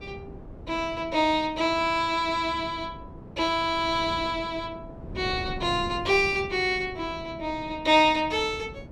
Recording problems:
wind noise; below 330 Hz, SNR 16 dB

